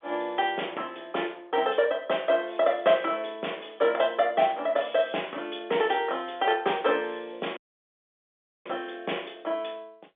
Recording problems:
telephone audio; 240 Hz to 3.6 kHz, G.711
dropout; at 7.5 s for 1 s

